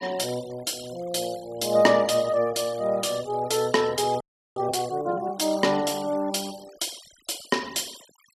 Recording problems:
denoising artefacts; signal-to-artefact ratio 20 dB
audio freezing; at 4 s

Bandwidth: 15 kHz